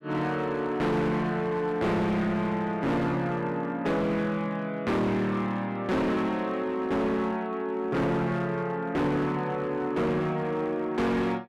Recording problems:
distorted audio; hard clipping, signal-to-distortion ratio 7 dB

